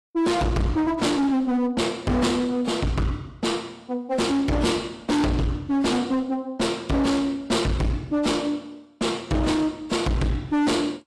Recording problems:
codec artefacts; AAC, log-spectral distance 2 dB
distorted audio; hard clipping, uneven, signal-to-distortion ratio 5 dB

